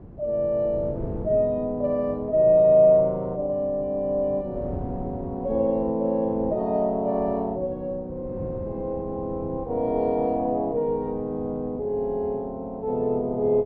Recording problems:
wind on the microphone; below 280 Hz, SNR 16 dB

